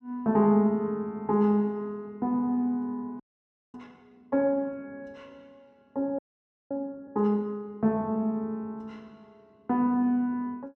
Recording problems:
audio freezing; at 3 s for 0.5 s and at 6 s for 0.5 s

